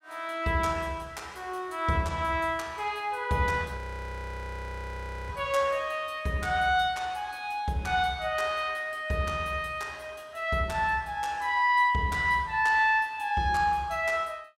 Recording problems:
frozen audio; at 4 s for 1.5 s

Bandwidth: 16 kHz